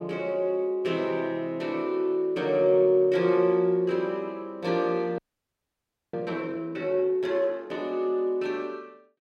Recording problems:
audio freezing; at 5 s for 1 s

